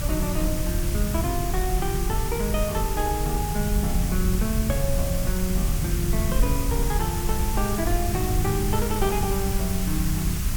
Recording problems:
hiss; slope +1 dB per octave, SNR 4 dB
low-frequency rumble; below 46 Hz, strongest tone 42 Hz, SNR 4 dB
wind on the microphone; below 120 Hz, SNR 2 dB

